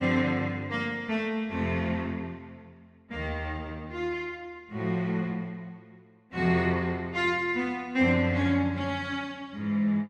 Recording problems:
none

